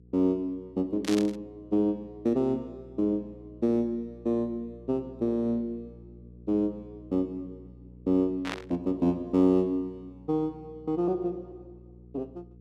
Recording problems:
mains hum; 60 Hz, harmonics up to 480 Hz, SNR 22 dB
static burst; at 1 s and at 8.5 s; peak -1 dB vs average level

